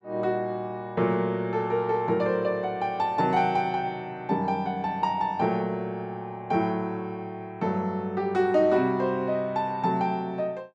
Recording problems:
none

